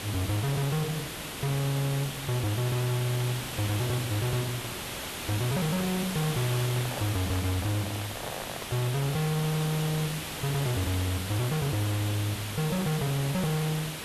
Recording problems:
distorted audio; soft clipping, signal-to-distortion ratio 7 dB
background hiss; slope -2 dB per octave, SNR 5 dB
microphone handling noise; from 6.5 to 10 s; peak -4 dB vs average level

